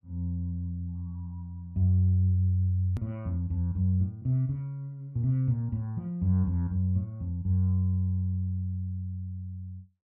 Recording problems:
click at an edit; at 3 s

